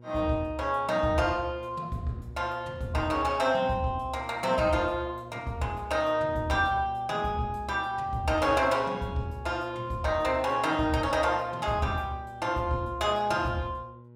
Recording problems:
hum; 60 Hz, harmonics up to 960 Hz, SNR 20 dB

